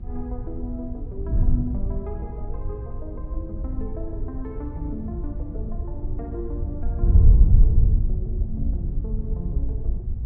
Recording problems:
hum; 60 Hz, harmonics up to 840 Hz, SNR 16 dB
wind on the microphone; below 78 Hz, SNR -10 dB

